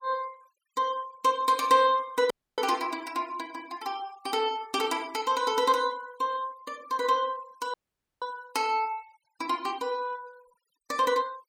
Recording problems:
denoising artefacts; signal-to-artefact ratio 23 dB
audio cutting out; at 2.5 s and at 7.5 s

